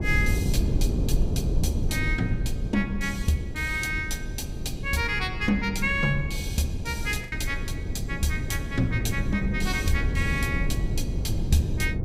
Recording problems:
rumble; below 140 Hz, SNR 2 dB
lost packets; 0.7% of the sound replaced, filled with the last packet

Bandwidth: 15.5 kHz